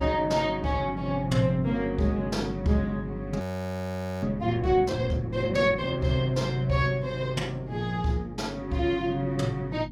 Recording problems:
hum; 50 Hz, harmonics up to 650 Hz, SNR 12 dB
frozen audio; at 3.5 s for 1 s

